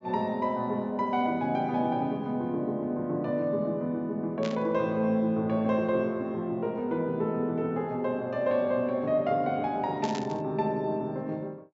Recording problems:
treble missing; nothing above 8 kHz
burst of static; at 4.5 s and at 10 s; peak -6 dB vs average level

